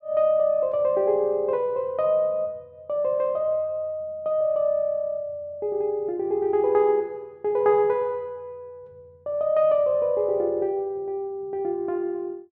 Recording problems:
none

